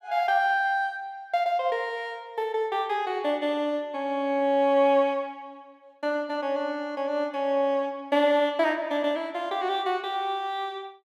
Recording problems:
none

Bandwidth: 14.5 kHz